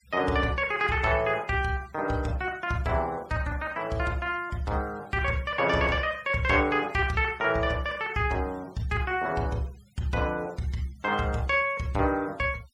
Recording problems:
denoising artefacts; signal-to-artefact ratio 25 dB

